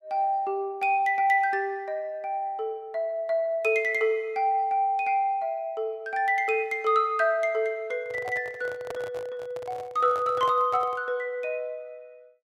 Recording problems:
handling noise; from 8 to 11 s; peak -6 dB vs average level

